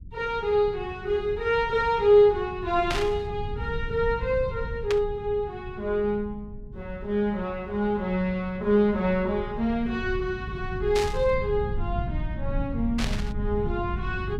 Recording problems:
low-frequency rumble; below 120 Hz, SNR 10 dB
burst of static; 4 times, first at 3 s; peak 0 dB vs average level

